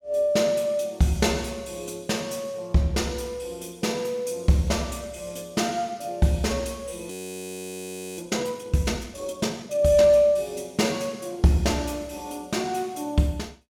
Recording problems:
audio freezing; at 7 s for 1 s

